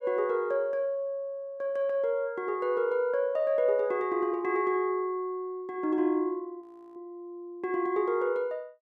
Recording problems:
frozen audio; at 6.5 s

